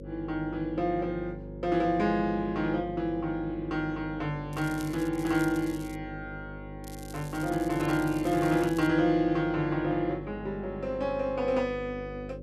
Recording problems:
electrical hum; 50 Hz, harmonics up to 550 Hz, SNR 12 dB
crackle; from 4.5 to 6 s and from 7 to 9 s; loose cable, SNR 19 dB

